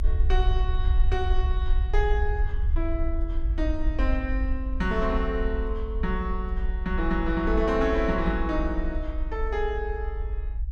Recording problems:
low-frequency rumble; below 60 Hz, strongest tone 24 Hz, SNR -1 dB

